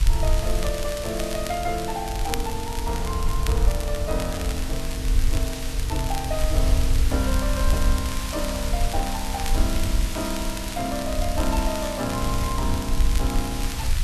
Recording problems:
hiss; slope 0 dB per octave, SNR 5 dB
wind noise; below 64 Hz, SNR -1 dB
crackle; vinyl, SNR 9 dB

